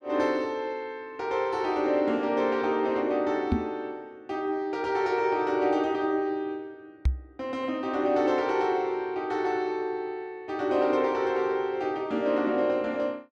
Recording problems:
knock on the microphone; at 3.5 s and at 7 s; peak +6 dB vs average level

